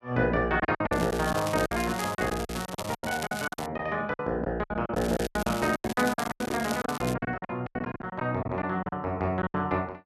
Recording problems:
lost packets; 17% of the sound replaced, filled with silence
crackle; from 1 to 3 s, at 3 s and from 5 to 7 s; loose cable, SNR 10 dB

